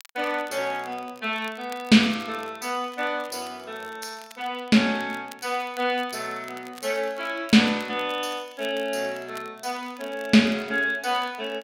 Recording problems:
crackle; vinyl, SNR 24 dB

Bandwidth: 16 kHz